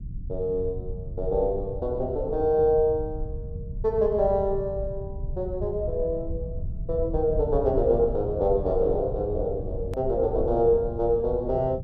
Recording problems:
rumble; below 100 Hz, SNR 10 dB
click at an edit; at 10 s

